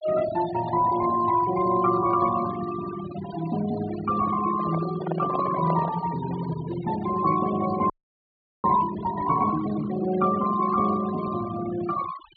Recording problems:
low-pass filter; nothing above 4.6 kHz
noise reduction artefacts; signal-to-artefact ratio 13 dB
microphone handling noise; from 4.5 to 6 s; peak -2 dB vs average level
frozen audio; at 8 s for 0.5 s

